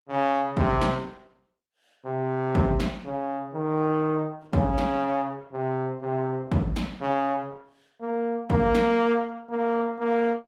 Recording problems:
lossy codec; Opus, log-spectral distance 2 dB, nothing above 17.7 kHz

